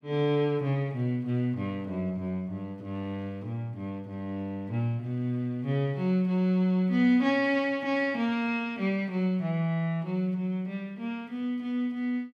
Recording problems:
none

